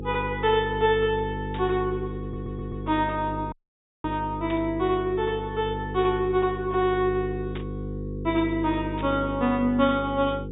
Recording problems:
low-pass filter; nothing above 4 kHz
hum; 50 Hz, harmonics up to 500 Hz, SNR 8 dB
static burst; 4 times, first at 1.5 s; peak -10 dB vs average level
audio stuttering; at 2 s
dropout; at 3.5 s for 0.5 s

